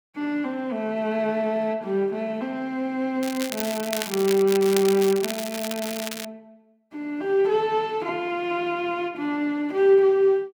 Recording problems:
crackle; from 3 to 6.5 s; loose cable, SNR 8 dB

